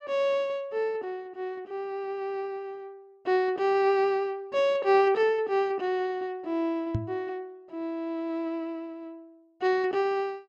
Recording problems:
microphone thump; at 7 s; peak +3 dB vs average level

